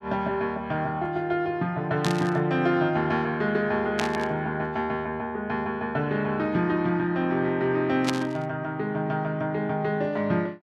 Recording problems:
static burst; at 2 s, at 4 s and at 8 s; peak +2 dB vs average level

